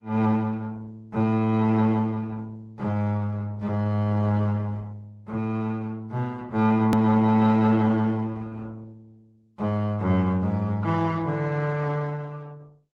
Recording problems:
lossy codec; AAC, then Opus, log-spectral distance 2 dB, nothing above 18.9 kHz
hard cut with a click; at 7 s

